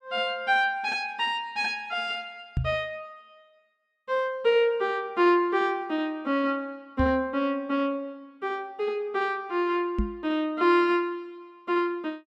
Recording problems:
microphone thump; at 2.5 s, at 7 s and at 10 s; peak +3 dB vs average level

